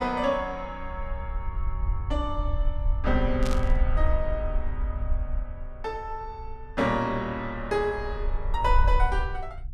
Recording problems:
rumble; below 56 Hz, SNR 1 dB
burst of static; at 3.5 s; peak -3 dB vs average level

